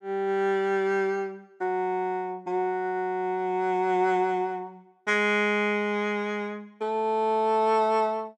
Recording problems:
none

